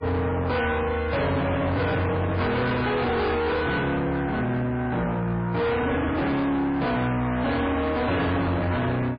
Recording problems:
codec artefacts; MP3, log-spectral distance 3 dB, nothing above 4.6 kHz
distortion; soft clipping, signal-to-distortion ratio 6 dB

